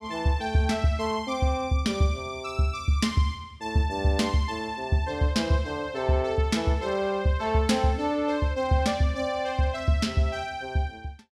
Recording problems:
none

